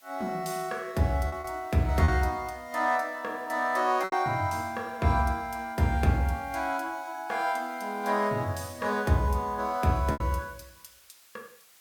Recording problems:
background hiss; slope +2 dB per octave, SNR 27 dB
packet loss; 3% of the sound replaced, filled with repeated pitch periods

